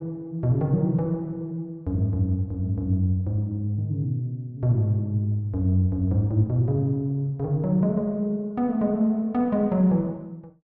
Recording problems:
none

